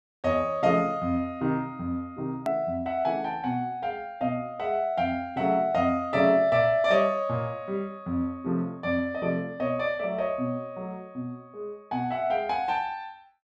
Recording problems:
edit click; at 2.5 s

